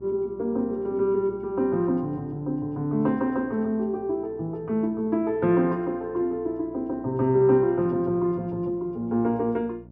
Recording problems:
electrical hum; 60 Hz, harmonics up to 840 Hz, SNR 24 dB

